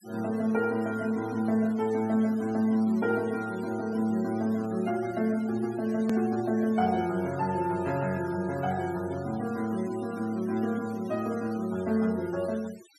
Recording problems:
noise reduction artefacts; signal-to-artefact ratio 20 dB
click at an edit; at 6 s

